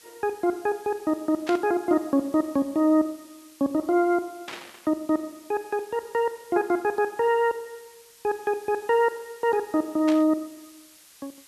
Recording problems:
background hiss; slope +2 dB per octave, SNR 25 dB
static burst; at 1.5 s, at 4.5 s and at 10 s; peak -6 dB vs average level

